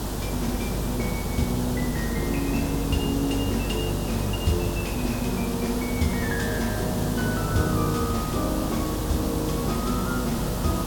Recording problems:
electrical hum; 50 Hz, harmonics up to 600 Hz, SNR 7 dB
hiss; SNR 4 dB

